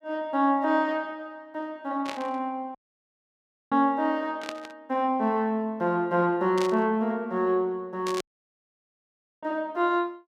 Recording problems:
burst of static; 4 times, first at 2 s; peak -4 dB vs average level
dropout; at 3 s for 1 s and at 8 s for 1 s

